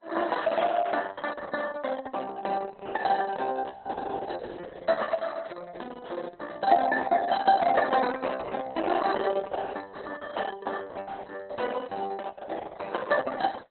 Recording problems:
codec artefacts; MP3, then Opus, log-spectral distance 5 dB, nothing above 4.1 kHz

